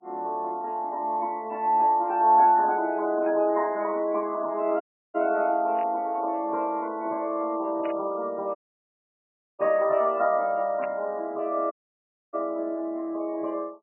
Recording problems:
lossy codec; MP3, log-spectral distance 2 dB, nothing above 2.7 kHz
static burst; 4 times, first at 2.5 s; peak -11 dB vs average level
audio cutting out; at 5 s, at 8.5 s for 1 s and at 12 s for 0.5 s

